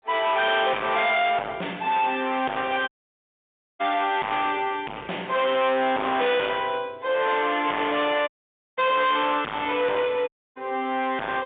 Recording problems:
telephone audio; 280 Hz to 3.6 kHz, G.711
distorted audio; hard clipping, signal-to-distortion ratio 6 dB
audio cutting out; at 3 s for 1 s, at 8.5 s and at 10 s

